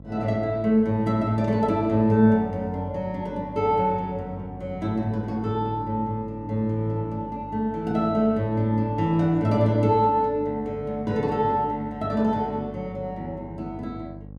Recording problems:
mains hum; 50 Hz, harmonics up to 800 Hz, SNR 17 dB

